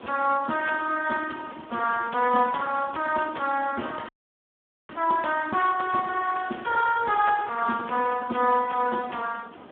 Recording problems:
telephone audio; 170 Hz to 2.6 kHz, Speex
hiss; SNR 20 dB
audio freezing; at 4 s for 1 s

